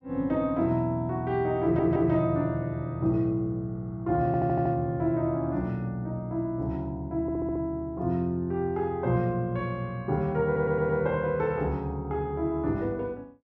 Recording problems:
audio stuttering; 4 times, first at 1.5 s

